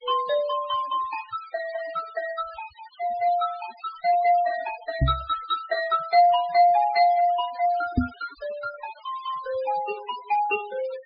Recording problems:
low-pass filter; nothing above 5 kHz
noise reduction artefacts; signal-to-artefact ratio 19 dB
microphone thump; at 5 s and at 8 s; peak +6 dB vs average level

